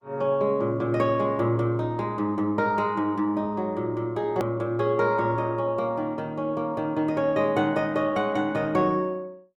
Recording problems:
lossy codec; Opus, log-spectral distance 2 dB, nothing above 20.1 kHz
click at an edit; at 4.5 s

